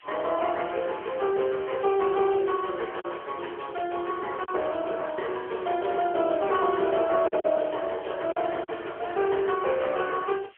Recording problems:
phone line; 320 Hz to 3.3 kHz, AMR-NB
hiss; SNR 27 dB
lost packets; 2% of the sound replaced, filled with silence

